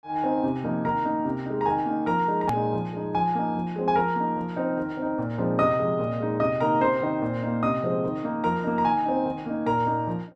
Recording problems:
click at an edit; at 2.5 s

